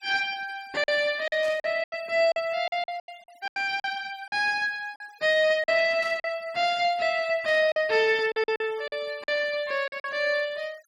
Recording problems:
denoising artefacts; signal-to-artefact ratio 25 dB
lost packets; 10% of the sound replaced, filled with silence
burst of static; 4 times, first at 1.5 s; peak -14 dB vs average level

